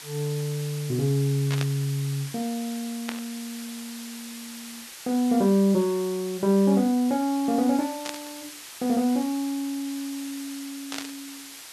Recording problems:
hiss; slope +2 dB per octave, SNR 14 dB
burst of static; 4 times, first at 1.5 s; peak -3 dB vs average level

